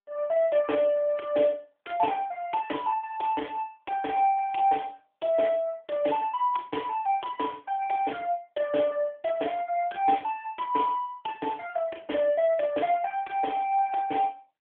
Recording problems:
telephone audio; 300 Hz to 3.4 kHz, AMR-NB

